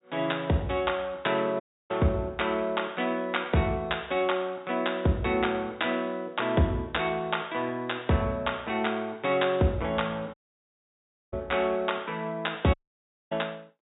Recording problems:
low-pass filter; nothing above 4 kHz
audio cutting out; at 1.5 s, at 10 s for 1 s and at 13 s for 0.5 s

